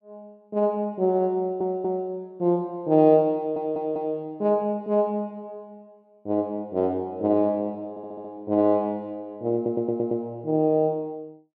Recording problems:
stutter; 4 times, first at 1.5 s

